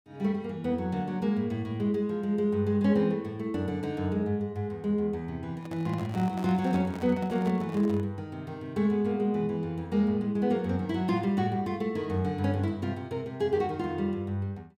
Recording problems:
microphone handling noise; from 5.5 to 8 s; peak -9 dB vs average level

